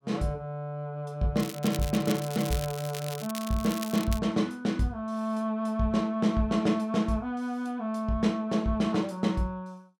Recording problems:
crackling; from 1.5 to 4 s; loose cable, SNR 11 dB

